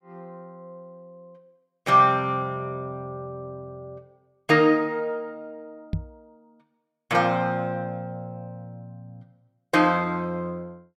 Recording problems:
knock on the microphone; at 6 s; peak 0 dB vs average level

